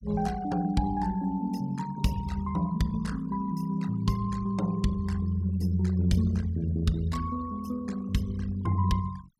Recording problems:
noise reduction artefacts; signal-to-artefact ratio 20 dB

